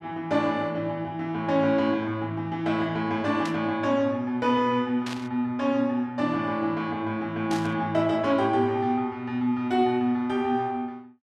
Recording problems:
static burst; at 3.5 s, at 5 s and at 7.5 s; peak -6 dB vs average level

